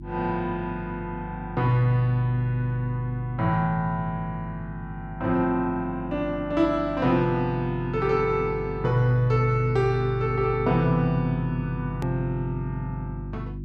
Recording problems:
electrical hum; 50 Hz, harmonics up to 350 Hz, SNR 12 dB
hard cut with a click; at 12 s

